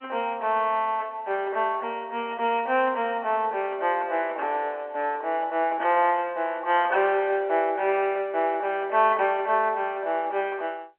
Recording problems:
telephone audio; 280 Hz to 3.1 kHz, G.711

